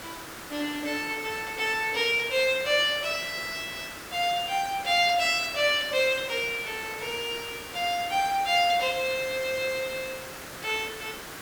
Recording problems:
hiss; SNR 13 dB

